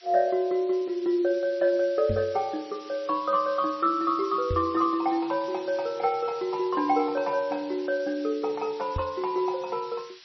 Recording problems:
lossy compression; MP3, then MP3, log-spectral distance 5 dB, nothing above 5.7 kHz
background hiss; slope +5 dB per octave, SNR 21 dB
knock on the microphone; at 2 s, at 4.5 s and at 9 s; peak -1 dB vs average level

